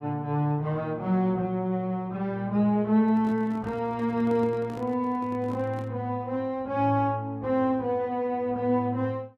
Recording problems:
microphone handling noise; from 3 to 6 s; peak -10 dB vs average level

